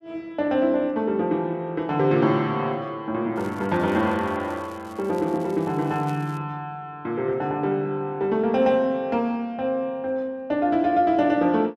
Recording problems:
crackle; from 3.5 to 4.5 s and from 4.5 to 6.5 s; loose cable, SNR 27 dB

